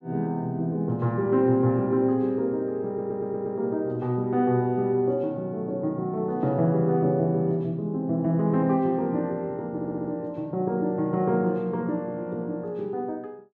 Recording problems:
audio stuttering; at 3 s and at 9.5 s

